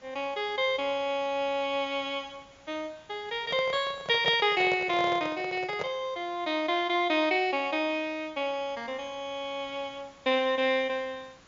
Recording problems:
treble cut off; nothing above 7.2 kHz
hiss; slope -3 dB per octave, SNR 28 dB
microphone handling noise; from 3.5 to 6 s; peak -2 dB vs average level

